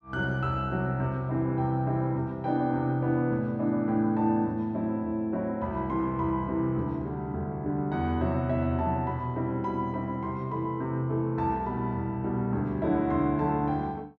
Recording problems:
none

